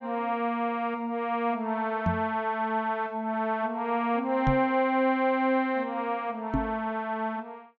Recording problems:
treble missing; nothing above 8 kHz
microphone bump; at 2 s, at 4.5 s and at 6.5 s; peak +4 dB vs average level

